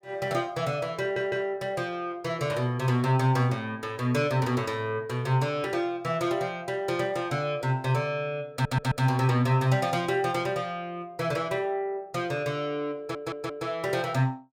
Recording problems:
audio stuttering; at 1 s, at 8.5 s and at 13 s

